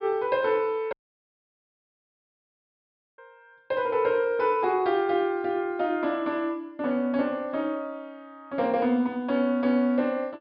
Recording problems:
treble cut off; nothing above 5.5 kHz
audio cutting out; at 1 s for 2.5 s

